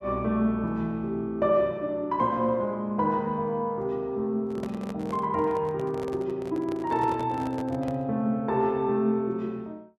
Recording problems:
microphone handling noise; from 4.5 to 8 s; peak -7 dB vs average level

